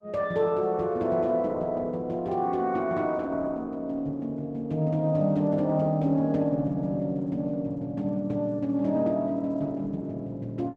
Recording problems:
lossy codec; Opus, log-spectral distance 2 dB

